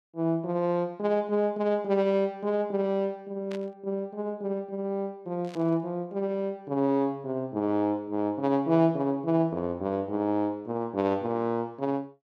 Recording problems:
burst of static; at 3.5 s and at 5.5 s; peak -12 dB vs average level

